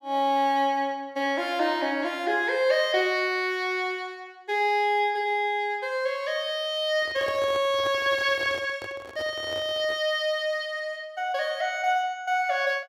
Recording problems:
handling noise; from 7 to 10 s; peak -8 dB vs average level

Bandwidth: 16.5 kHz